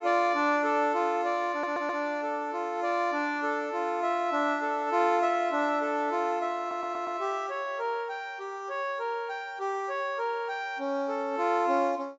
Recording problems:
low-pass filter; nothing above 8 kHz
stutter; at 1.5 s and at 6.5 s

